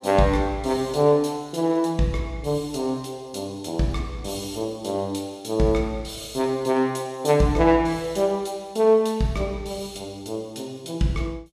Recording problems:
none

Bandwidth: 13.5 kHz